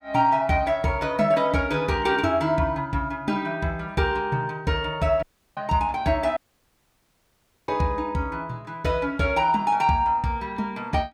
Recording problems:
dropout; at 5 s and at 6.5 s for 1.5 s

